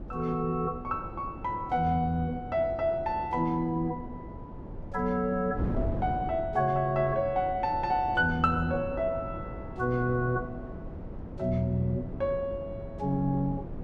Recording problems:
wind noise; below 290 Hz, SNR 11 dB

